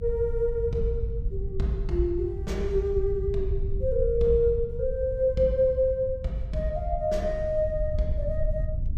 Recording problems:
rumble; below 76 Hz, SNR 6 dB

